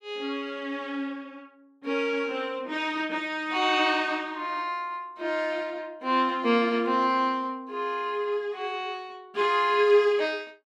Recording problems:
none

